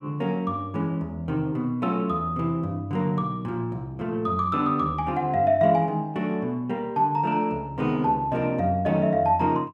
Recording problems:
none

